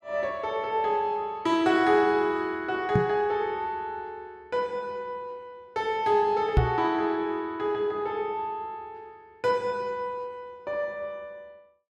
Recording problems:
microphone bump; at 3 s and at 6.5 s; peak +9 dB vs average level

